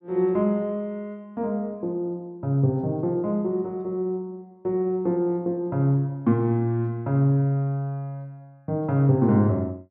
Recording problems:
none

